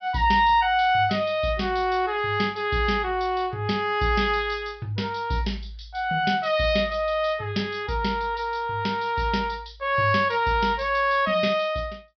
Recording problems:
treble missing; nothing above 5.5 kHz

